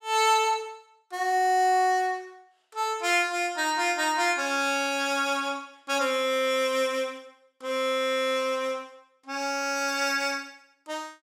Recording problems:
none

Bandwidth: 16.5 kHz